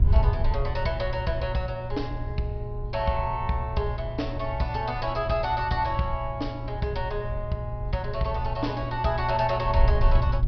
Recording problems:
treble missing; nothing above 5.5 kHz
hum; 60 Hz, harmonics up to 720 Hz, SNR 8 dB
wind on the microphone; below 74 Hz, SNR 4 dB

